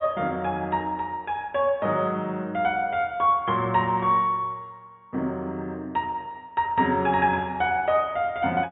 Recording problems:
low-pass filter; nothing above 4 kHz

